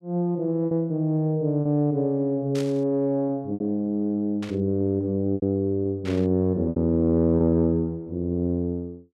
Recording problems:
packet loss; 5% of the sound replaced, filled with repeated pitch periods
burst of static; at 2.5 s, at 4.5 s and at 6 s; peak -10 dB vs average level

